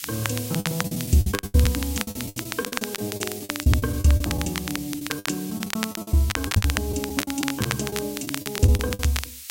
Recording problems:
background hiss; SNR 11 dB
crackling; vinyl, SNR 6 dB
lost packets; 21% of the sound replaced, filled with the last packet

